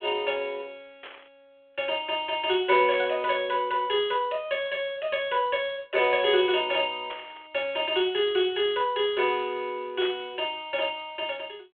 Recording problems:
phone line; 300 Hz to 3.4 kHz, G.726
static burst; 4 times, first at 1 s; peak -8 dB vs average level

